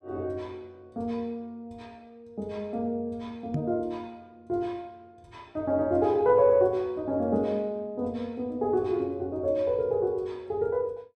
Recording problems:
knock on the microphone; at 3.5 s; peak +2 dB vs average level

